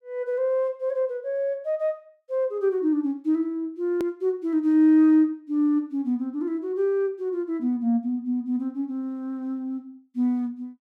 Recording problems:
hard cut with a click; at 4 s

